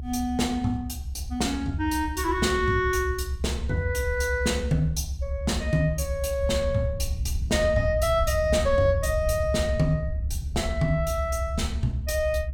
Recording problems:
rumble; below 74 Hz, strongest tone 64 Hz, SNR 5 dB

